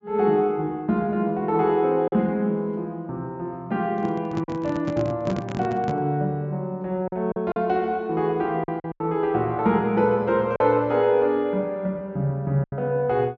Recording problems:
treble missing; nothing above 7.4 kHz
lost packets; 4% of the sound replaced, filled with silence
microphone handling noise; from 4 to 6 s; peak -2 dB vs average level

